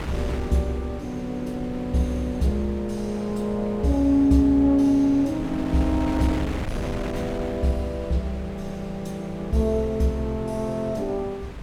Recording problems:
wind noise; below 460 Hz, SNR 11 dB

